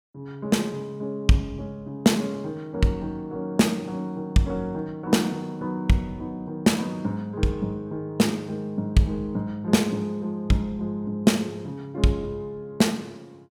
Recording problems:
none

